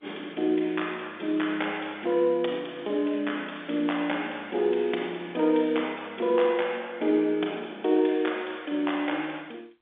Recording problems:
phone line; 260 Hz to 3.6 kHz, G.711

